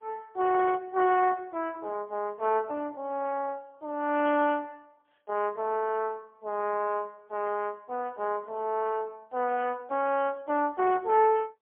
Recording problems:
phone line; 300 Hz to 3.3 kHz, AMR-NB, then MP3

